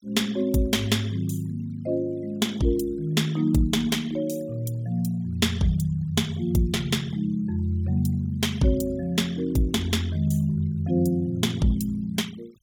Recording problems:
noise reduction artefacts; signal-to-artefact ratio 24 dB

